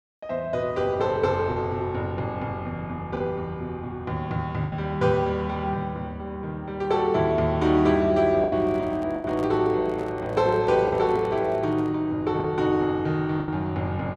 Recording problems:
lost packets; 3% of the sound replaced, filled with the last packet
handling noise; from 8.5 to 12 s; peak -10 dB vs average level

